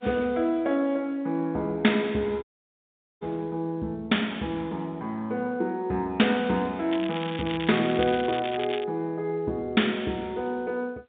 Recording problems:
telephone audio; 150 Hz to 3.7 kHz, G.711
audio cutting out; at 2.5 s for 1 s
crackle; from 7 to 9 s; loose cable, SNR 10 dB

